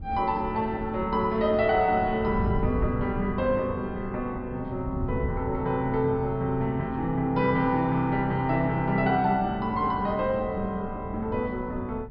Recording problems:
treble missing; nothing above 5.5 kHz
wind on the microphone; below 140 Hz, SNR 11 dB

